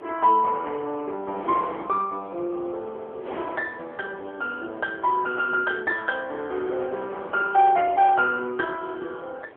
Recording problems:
telephone audio; 300 Hz to 2.3 kHz, AMR-NB
wind on the microphone; below 880 Hz, SNR 17 dB

